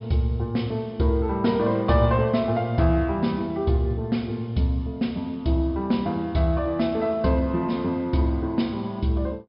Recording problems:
treble missing; nothing above 5.5 kHz

